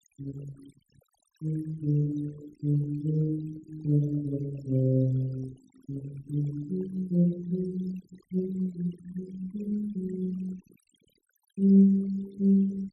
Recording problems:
denoising artefacts; signal-to-artefact ratio 22 dB

